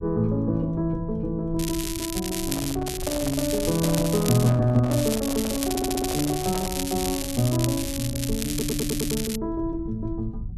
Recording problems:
low-frequency rumble; below 110 Hz, SNR 13 dB
crackle; from 1.5 to 3 s, from 3 to 4.5 s and from 5 to 9.5 s; loose cable, SNR 6 dB
microphone handling noise; from 2.5 to 7 s; peak -6 dB vs average level
stutter; at 5.5 s and at 8.5 s

